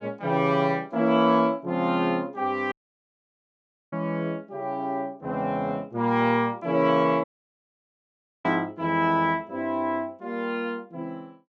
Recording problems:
audio cutting out; at 2.5 s for 1 s and at 7 s for 1 s

